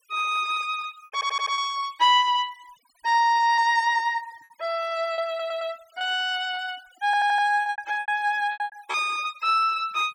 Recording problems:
noise reduction artefacts; signal-to-artefact ratio 23 dB
lost packets; 8% of the sound replaced, filled with repeated pitch periods
audio stuttering; at 1 s, at 5.5 s and at 7 s

